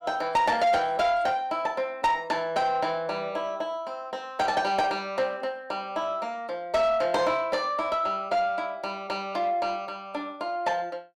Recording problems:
distortion; soft clipping, signal-to-distortion ratio 11 dB

